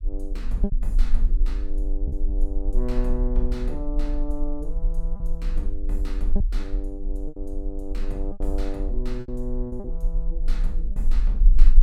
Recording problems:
rumble; below 36 Hz, strongest tone 28 Hz, SNR -7 dB
lost packets; 5% of the sound replaced, filled with repeated pitch periods

